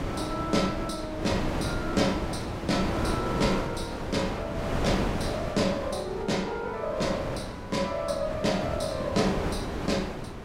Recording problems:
wind on the microphone; below 750 Hz, SNR 3 dB

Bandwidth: 16 kHz